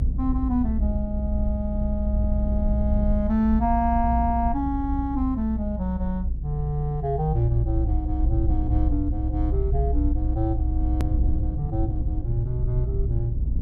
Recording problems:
rumble; below 62 Hz, strongest tone 60 Hz, SNR 0 dB
hard cut with a click; at 11 s

